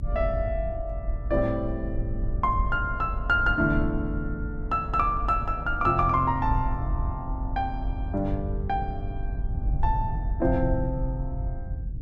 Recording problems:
rumble; below 76 Hz, SNR 5 dB

